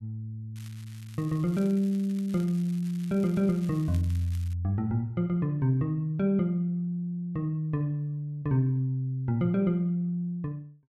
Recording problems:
crackle; from 0.5 to 4.5 s; loose cable, SNR 24 dB

